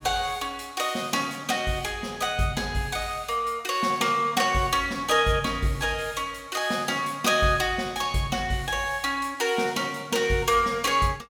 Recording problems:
none

